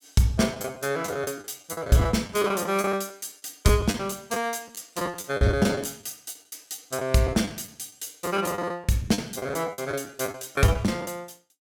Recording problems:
lost packets; 16% of the sound replaced, filled with the last packet

